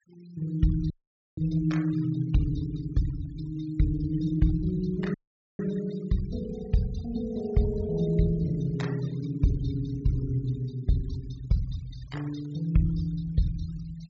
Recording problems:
low-pass filter; nothing above 8 kHz
denoising artefacts; signal-to-artefact ratio 21 dB
audio cutting out; at 1 s and at 5 s

